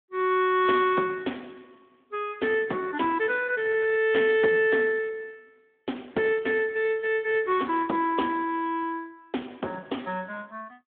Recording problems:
telephone audio; 240 Hz to 3.4 kHz, Speex

